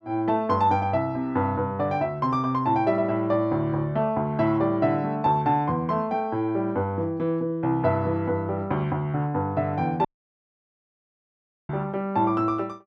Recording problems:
audio cutting out; at 10 s for 1.5 s

